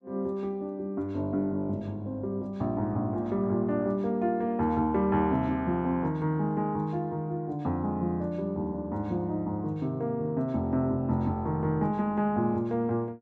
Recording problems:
none

